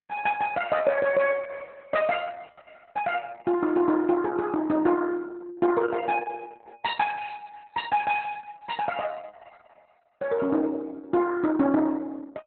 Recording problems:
codec artefacts; Opus, log-spectral distance 4 dB, nothing above 4 kHz

